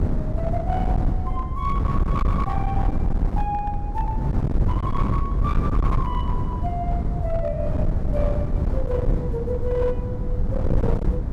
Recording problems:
distortion; hard clipping, signal-to-distortion ratio 8 dB
wind on the microphone; below 130 Hz, SNR -5 dB

